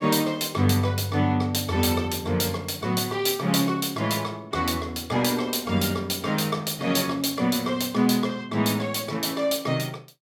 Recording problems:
none

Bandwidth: 17 kHz